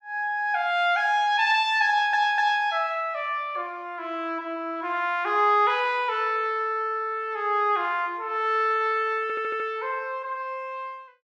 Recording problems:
audio stuttering; at 2 s and at 9 s

